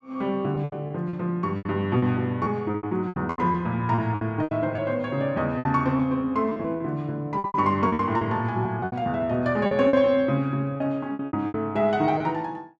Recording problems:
lost packets; 14% of the sound replaced, filled with repeated pitch periods

